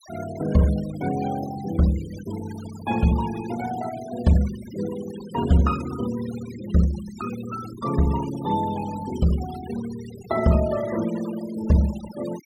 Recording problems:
noise reduction artefacts; signal-to-artefact ratio 16 dB

